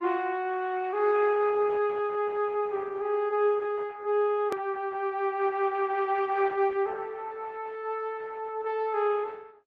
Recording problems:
codec artefacts; Opus, then MP3, log-spectral distance 2 dB, nothing above 13.1 kHz
edit click; at 4.5 s

